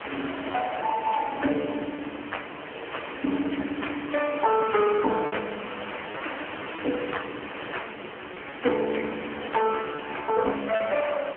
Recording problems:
phone line; 220 Hz to 3.1 kHz, AMR-NB
hiss; SNR 10 dB
lost packets; 3% of the sound replaced, filled with repeated pitch periods

